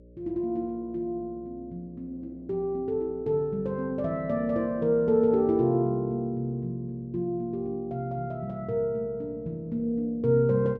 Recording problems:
hum; 60 Hz, harmonics up to 600 Hz, SNR 24 dB

